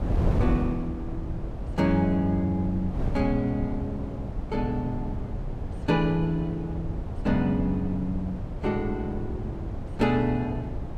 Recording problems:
wind on the microphone; below 180 Hz, SNR 5 dB

